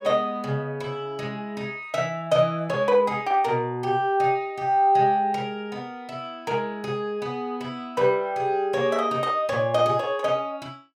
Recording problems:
none

